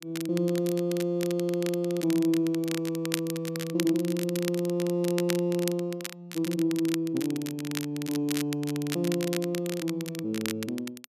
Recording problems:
crackle; vinyl, SNR 10 dB

